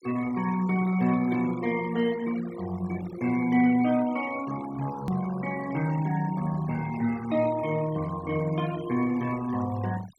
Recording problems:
denoising artefacts; signal-to-artefact ratio 17 dB
edit click; at 5 s

